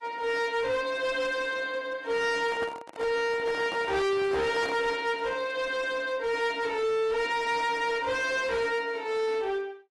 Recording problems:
lossy codec; AAC, log-spectral distance 2 dB
distorted audio; hard clipping, uneven, signal-to-distortion ratio 7 dB
handling noise; from 2.5 to 5 s; peak -4 dB vs average level

